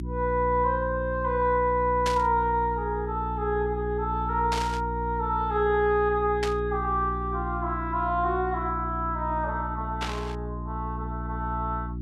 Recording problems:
electrical hum; 60 Hz, harmonics up to 360 Hz, SNR 7 dB
static burst; 4 times, first at 2 s; peak 0 dB vs average level

